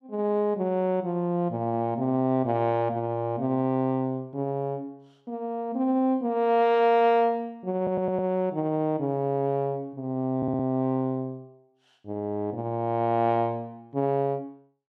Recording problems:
stutter; at 8 s and at 10 s

